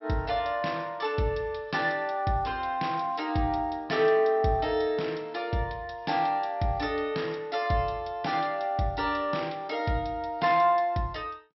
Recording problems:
treble missing; nothing above 5.6 kHz

